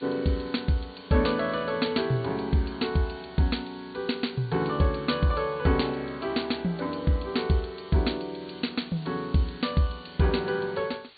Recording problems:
low-pass filter; nothing above 4.6 kHz
hiss; SNR 24 dB

